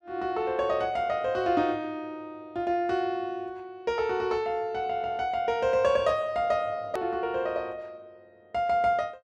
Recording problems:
hard cut with a click; at 7 s

